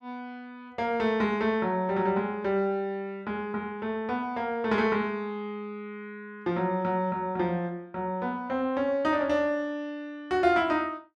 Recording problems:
none

